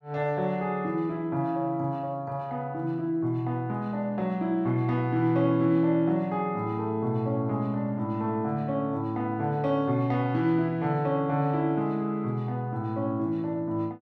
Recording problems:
none

